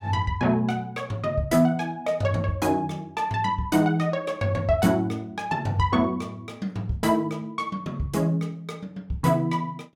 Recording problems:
none

